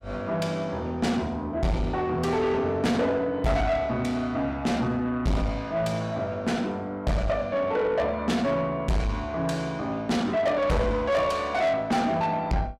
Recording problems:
distortion; soft clipping, signal-to-distortion ratio 7 dB

